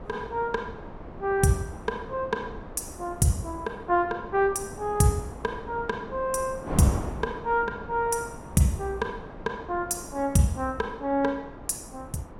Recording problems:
wind on the microphone; below 700 Hz, SNR 13 dB

